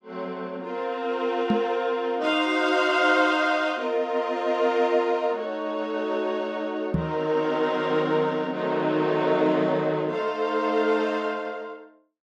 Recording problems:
microphone thump; at 1.5 s and at 7 s; peak +4 dB vs average level

